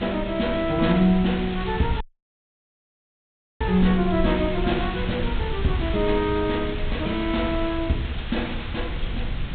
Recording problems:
treble cut off; nothing above 4 kHz
background hiss; SNR 12 dB
low-frequency rumble; below 96 Hz, SNR 8 dB
audio cutting out; at 2 s for 1.5 s

